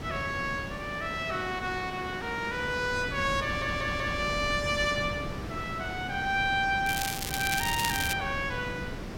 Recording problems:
background hiss; slope -6 dB per octave, SNR 10 dB
wind noise; below 190 Hz, SNR 12 dB
audio stuttering; at 3.5 s
crackle; from 7 to 8 s; loose cable, SNR 3 dB

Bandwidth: 16.5 kHz